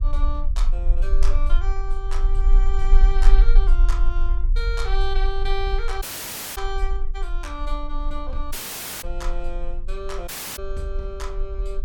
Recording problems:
rumble; below 36 Hz, strongest tone 20 Hz, SNR -8 dB
audio cutting out; at 6 s for 0.5 s, at 8.5 s for 0.5 s and at 10 s

